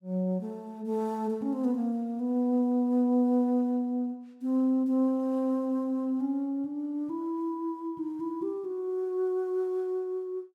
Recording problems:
none

